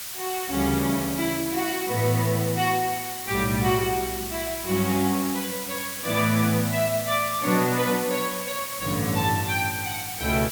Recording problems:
hiss; slope +2 dB per octave, SNR 6 dB

